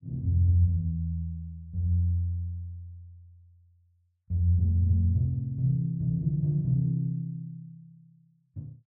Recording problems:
none

